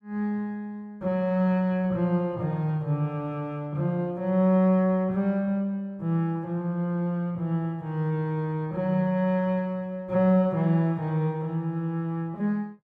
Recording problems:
none

